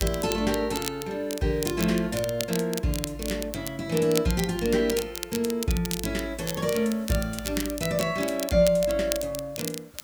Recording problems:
hiss; SNR 26 dB
crackling; vinyl, SNR 8 dB

